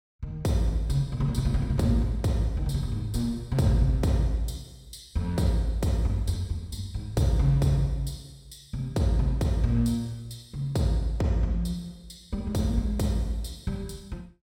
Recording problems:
none

